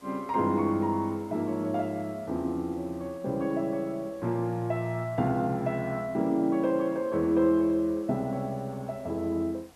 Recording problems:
hiss; slope -4 dB per octave, SNR 27 dB

